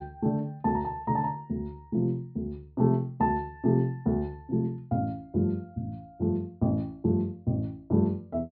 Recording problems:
low-pass filter; nothing above 4.9 kHz

